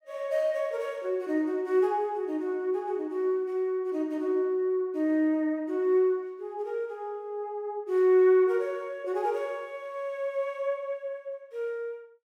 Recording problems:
none

